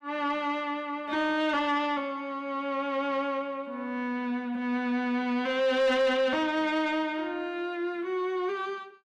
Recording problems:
distorted audio; soft clipping, signal-to-distortion ratio 12 dB

